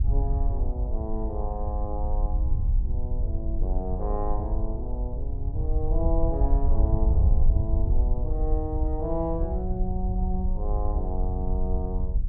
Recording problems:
wind noise; below 66 Hz, SNR -6 dB

